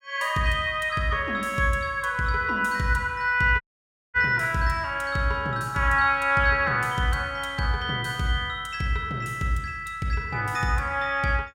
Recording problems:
audio cutting out; at 3.5 s for 0.5 s

